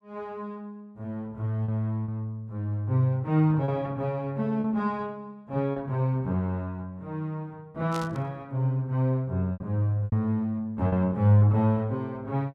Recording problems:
lost packets; 3% of the sound replaced, filled with repeated pitch periods
static burst; at 8 s; peak -7 dB vs average level

